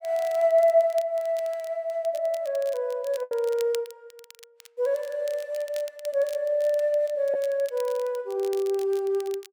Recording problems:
crackling; vinyl, SNR 22 dB
packet loss; 1% of the sound replaced, filled with the last packet

